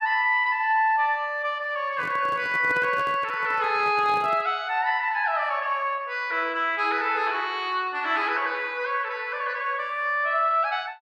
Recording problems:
microphone handling noise; from 2 to 4.5 s; peak -9 dB vs average level

